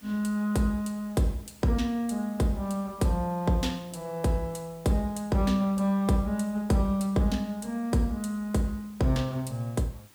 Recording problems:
background hiss; slope -2 dB per octave, SNR 26 dB

